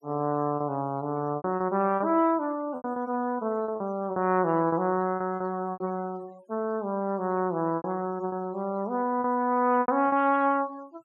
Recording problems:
noise reduction artefacts; signal-to-artefact ratio 26 dB
lost packets; 8% of the sound replaced, filled with repeated pitch periods

